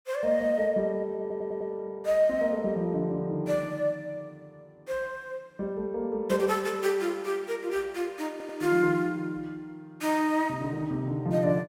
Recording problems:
stutter; at 1 s and at 8.5 s

